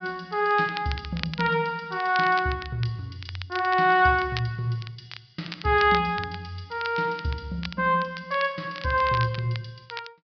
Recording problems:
treble missing; nothing above 5.5 kHz
crackling; vinyl, SNR 15 dB

